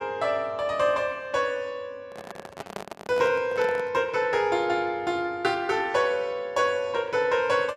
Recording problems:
handling noise; from 2 to 4 s; peak -5 dB vs average level

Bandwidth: 13.5 kHz